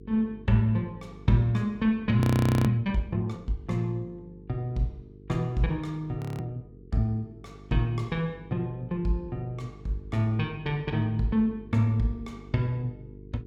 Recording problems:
hum; 50 Hz, harmonics up to 450 Hz, SNR 19 dB
audio freezing; at 2 s and at 6 s

